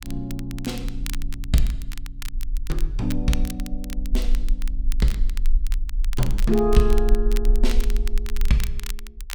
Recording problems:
low-frequency rumble; below 38 Hz, strongest tone 24 Hz, SNR 1 dB
crackling; vinyl, SNR 13 dB

